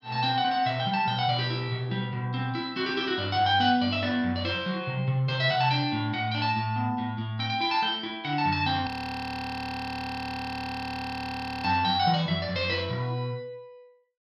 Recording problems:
audio freezing; at 9 s for 3 s

